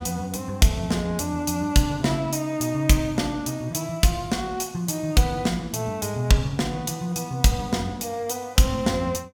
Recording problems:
none

